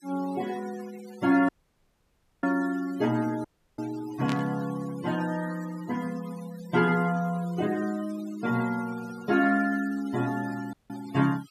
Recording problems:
denoising artefacts; signal-to-artefact ratio 19 dB
audio cutting out; at 1.5 s for 1 s, at 3.5 s and at 11 s
burst of static; at 4.5 s; peak -3 dB vs average level

